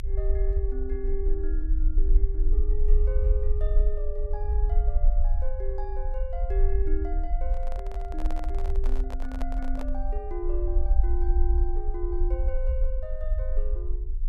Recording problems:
rumble; below 50 Hz, strongest tone 22 Hz, SNR -9 dB
microphone handling noise; from 7.5 to 10 s; peak +1 dB vs average level

